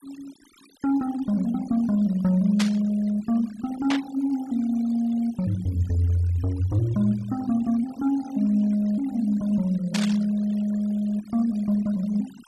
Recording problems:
denoising artefacts; signal-to-artefact ratio 22 dB
burst of static; at 2.5 s, at 4 s and at 10 s; peak 0 dB vs average level

